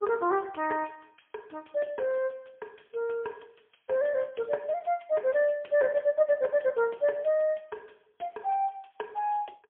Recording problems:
phone line; 320 Hz to 3.4 kHz, AMR-NB, then MP3

